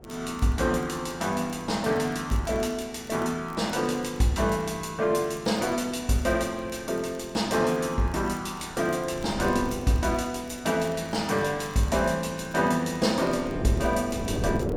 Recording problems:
wind noise; below 400 Hz, SNR 14 dB
crackle; vinyl, SNR 29 dB

